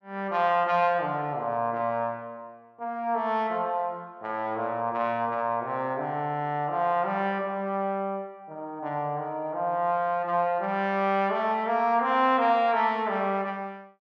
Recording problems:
none

